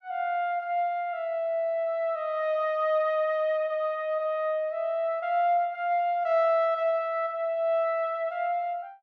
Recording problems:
none

